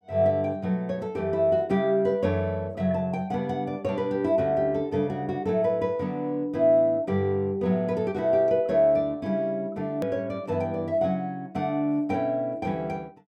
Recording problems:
hard cut with a click; at 10 s

